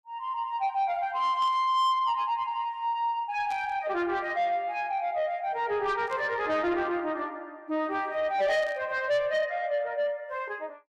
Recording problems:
distorted audio; soft clipping, signal-to-distortion ratio 11 dB
burst of static; 4 times, first at 1.5 s; peak -13 dB vs average level

